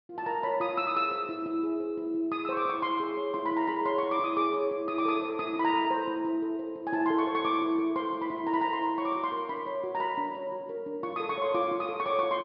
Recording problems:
treble missing; nothing above 5.5 kHz

